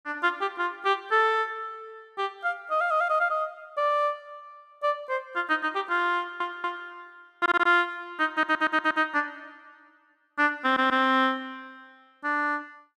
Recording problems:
stutter; 4 times, first at 6 s

